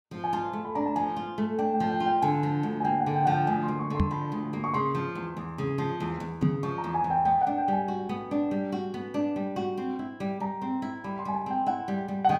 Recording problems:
knock on the microphone; at 4 s and at 6.5 s; peak +7 dB vs average level

